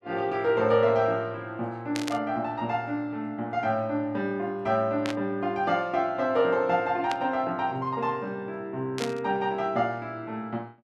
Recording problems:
static burst; 4 times, first at 2 s; peak -1 dB vs average level

